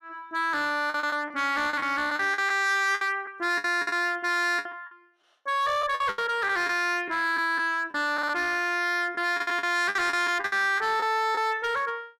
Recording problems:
distortion; hard clipping, uneven, signal-to-distortion ratio 10 dB
lost packets; 11% of the sound replaced, filled with the last packet

